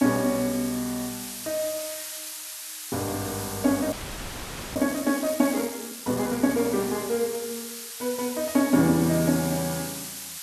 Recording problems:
background hiss; SNR 8 dB
frozen audio; at 4 s for 1 s

